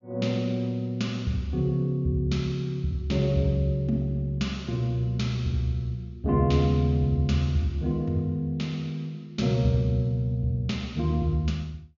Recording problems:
treble missing; nothing above 7.1 kHz

